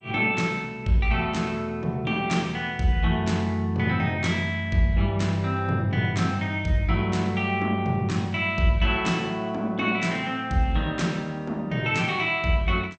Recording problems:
codec artefacts; MP2, log-spectral distance 2 dB, nothing above 7.6 kHz

